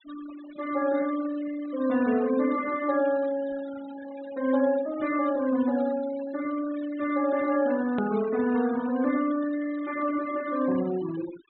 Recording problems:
low-pass filter; nothing above 4 kHz
noise reduction artefacts; signal-to-artefact ratio 17 dB
edit click; at 8 s

